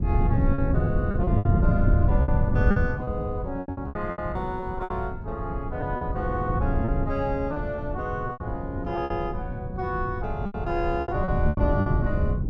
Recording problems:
wind on the microphone; below 150 Hz, SNR -2 dB
packet loss; 11% of the sound replaced, filled with repeated pitch periods

